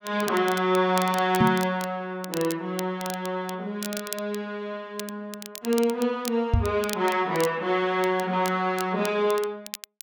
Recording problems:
crackle; vinyl, SNR 13 dB
knock on the microphone; at 1.5 s and at 6.5 s; peak +7 dB vs average level

